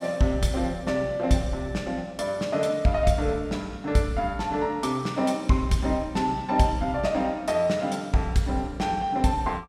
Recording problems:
none

